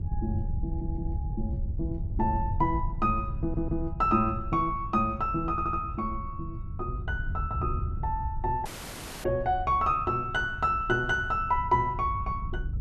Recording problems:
wind noise; below 98 Hz, SNR 7 dB
audio stuttering; at 0.5 s, at 3.5 s and at 5.5 s
dropout; at 8.5 s for 0.5 s

